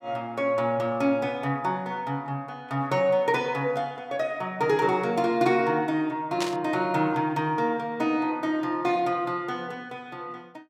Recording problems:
static burst; at 6.5 s; peak 0 dB vs average level

